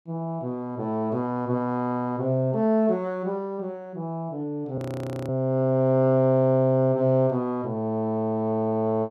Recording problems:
frozen audio; at 5 s for 0.5 s

